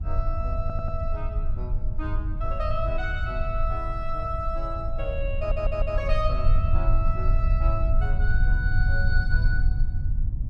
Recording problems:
rumble; below 66 Hz, strongest tone 22 Hz, SNR -5 dB
audio stuttering; at 0.5 s and at 5.5 s

